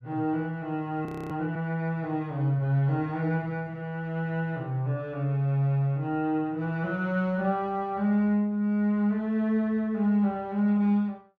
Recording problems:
audio freezing; at 1 s

